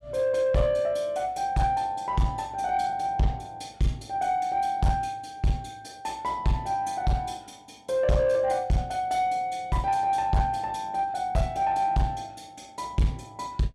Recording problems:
distorted audio; soft clipping, signal-to-distortion ratio 11 dB

